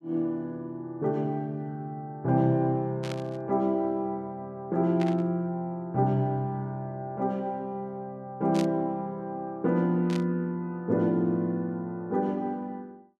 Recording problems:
burst of static; 4 times, first at 3 s; peak -5 dB vs average level

